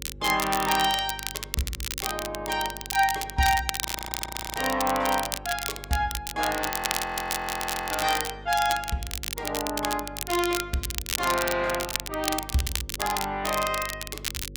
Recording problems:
hum; 50 Hz, harmonics up to 550 Hz, SNR 17 dB
crackle; vinyl, SNR 4 dB
audio freezing; at 4 s for 0.5 s and at 6.5 s for 1 s

